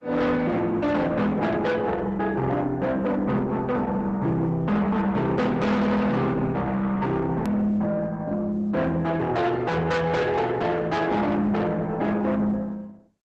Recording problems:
lossy compression; Opus, log-spectral distance 2 dB, nothing above 13.1 kHz
distorted audio; soft clipping, signal-to-distortion ratio 7 dB
click at an edit; at 7.5 s

